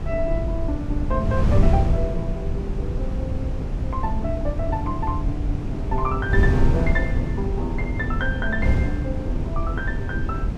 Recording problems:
hum; 50 Hz, harmonics up to 950 Hz, SNR 14 dB
wind on the microphone; below 120 Hz, SNR -4 dB

